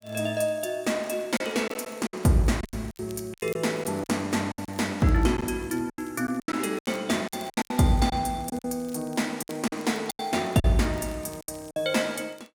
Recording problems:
crackling; vinyl, SNR 26 dB
packet loss; 12% of the sound replaced, filled with silence

